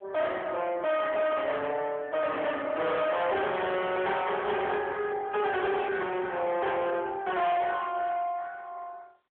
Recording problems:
phone line; 370 Hz to 3.8 kHz, AMR-NB
distorted audio; soft clipping, signal-to-distortion ratio 7 dB

